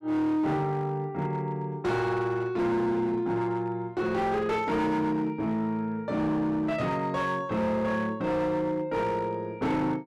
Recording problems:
distorted audio; hard clipping, signal-to-distortion ratio 11 dB

